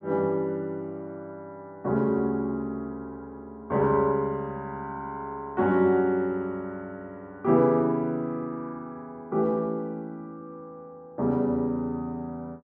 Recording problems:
none

